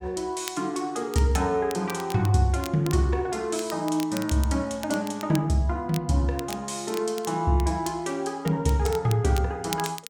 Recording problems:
crackling; vinyl, SNR 16 dB

